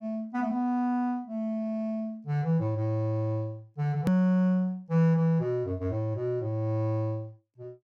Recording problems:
hard cut with a click; at 4 s

